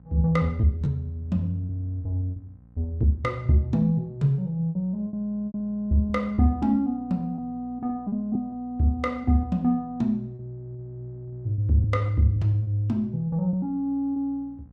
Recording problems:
hum; 60 Hz, harmonics up to 540 Hz, SNR 25 dB
lost packets; 6% of the sound replaced, filled with repeated pitch periods

